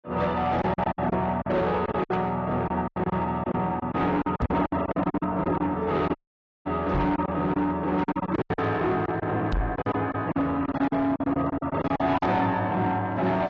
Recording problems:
codec artefacts; AAC, log-spectral distance 2 dB
distorted audio; soft clipping, signal-to-distortion ratio 10 dB
packet loss; 14% of the sound replaced, filled with silence
knock on the microphone; at 4.5 s, at 7 s and at 9.5 s; peak +3 dB vs average level
dropout; at 6 s for 0.5 s

